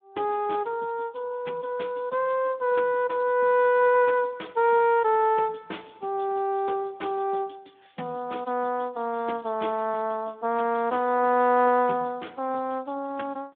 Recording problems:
phone line; 220 Hz to 3.5 kHz, Speex

